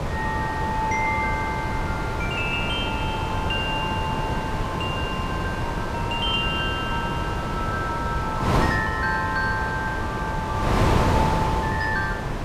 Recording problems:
wind noise; below 920 Hz, SNR -1 dB

